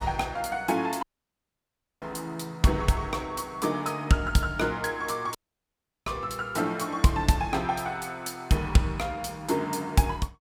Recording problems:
audio cutting out; at 1 s for 1 s and at 5.5 s for 0.5 s

